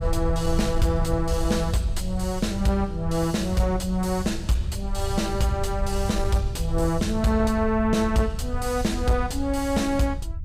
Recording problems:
distorted audio; soft clipping, signal-to-distortion ratio 11 dB
rumble; below 82 Hz, SNR 6 dB

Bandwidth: 15.5 kHz